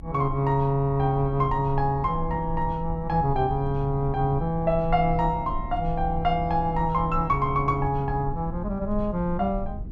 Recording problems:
rumble; below 88 Hz, strongest tone 20 Hz, SNR 10 dB

